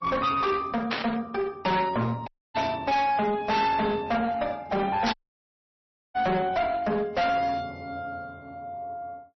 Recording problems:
lossy compression; MP3, log-spectral distance 2 dB, nothing above 5.8 kHz
distortion; hard clipping, uneven, signal-to-distortion ratio 6 dB
static burst; at 1 s, at 2.5 s and at 5 s; peak +3 dB vs average level
audio cutting out; at 2.5 s and at 5 s for 1 s

